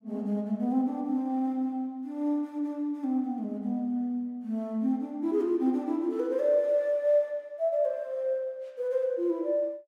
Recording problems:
none

